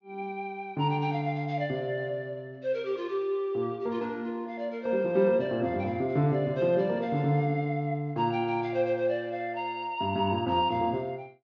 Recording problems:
low-pass filter; nothing above 6.9 kHz

